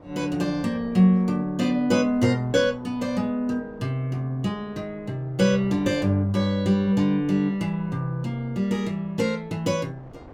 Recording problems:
wind noise; below 650 Hz, SNR 24 dB

